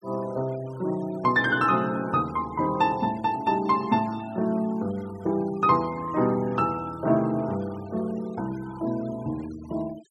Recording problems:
denoising artefacts; signal-to-artefact ratio 23 dB

